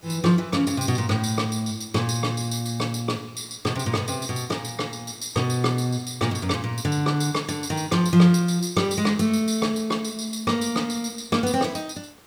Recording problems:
background hiss; slope -3 dB per octave, SNR 28 dB

